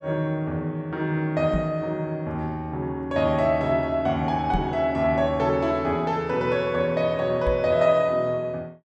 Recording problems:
microphone bump; at 1.5 s, at 4.5 s and at 7.5 s; peak 0 dB vs average level

